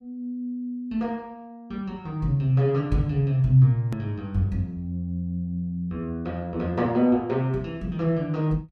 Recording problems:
hard cut with a click; at 4 s

